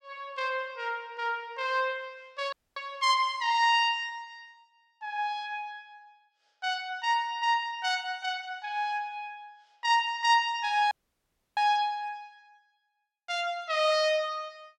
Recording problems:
audio cutting out; at 2.5 s and at 11 s for 0.5 s

